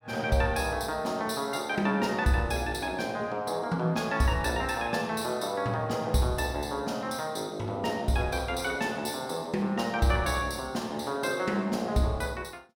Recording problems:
none

